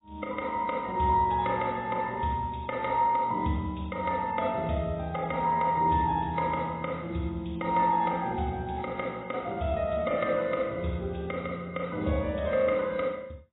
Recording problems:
lossy codec; AAC, log-spectral distance 3 dB, nothing above 3.9 kHz

